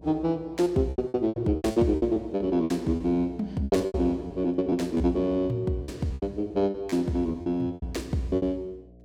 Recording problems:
hum; 60 Hz, harmonics up to 720 Hz, SNR 24 dB
packet loss; 15% of the sound replaced, filled with repeated pitch periods

